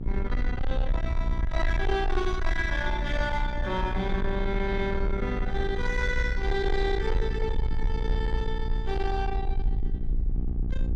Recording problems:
distortion; soft clipping, signal-to-distortion ratio 11 dB
hum; 60 Hz, harmonics up to 780 Hz, SNR 7 dB
rumble; below 56 Hz, SNR 1 dB

